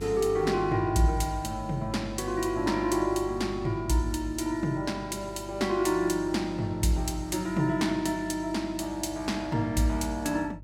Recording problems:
electrical hum; 50 Hz, harmonics up to 350 Hz, SNR 15 dB

